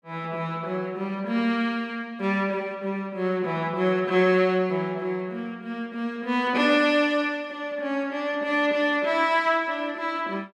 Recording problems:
none

